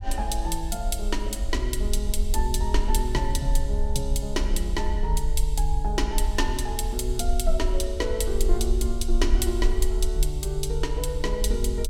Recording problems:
rumble; below 48 Hz, SNR -1 dB

